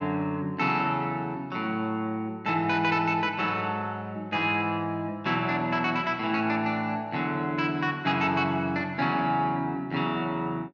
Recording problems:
none

